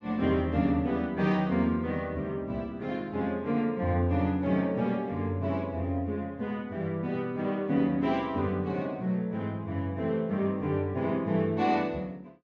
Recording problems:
low-pass filter; nothing above 8 kHz

